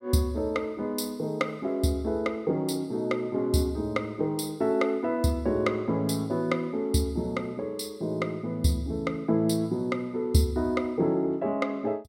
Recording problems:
none

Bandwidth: 16 kHz